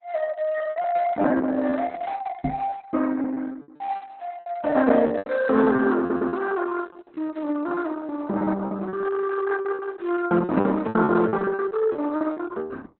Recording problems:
lossy codec; Opus, log-spectral distance 3 dB, nothing above 4 kHz
lost packets; 14% of the sound replaced, filled with repeated pitch periods
knock on the microphone; at 2.5 s; peak -1 dB vs average level
stutter; at 6 s

